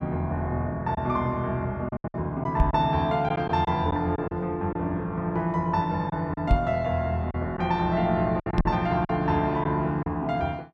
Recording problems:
packet loss; 6% of the sound replaced, filled with silence
knock on the microphone; at 2.5 s, at 6.5 s and at 8.5 s; peak +7 dB vs average level

